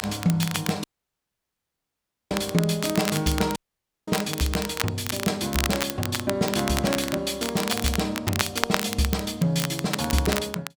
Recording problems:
crackling; vinyl, SNR 5 dB
dropout; at 1 s for 1.5 s and at 3.5 s for 0.5 s

